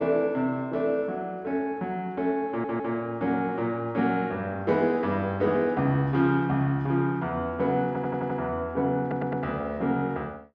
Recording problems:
audio stuttering; at 2.5 s, at 8 s and at 9 s

